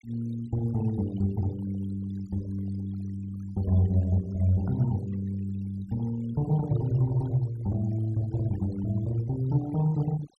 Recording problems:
noise reduction artefacts; signal-to-artefact ratio 19 dB

